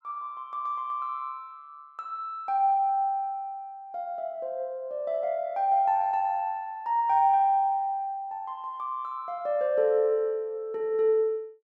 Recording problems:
none

